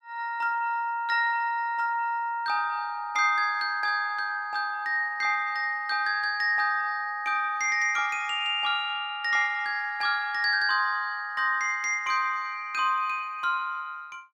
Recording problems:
none

